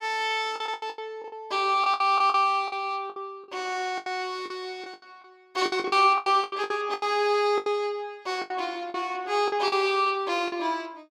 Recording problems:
packet loss; 15% of the sound replaced, filled with the last packet

